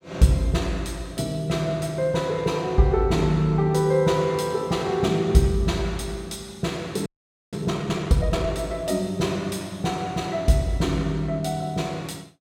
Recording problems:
frozen audio; at 7 s

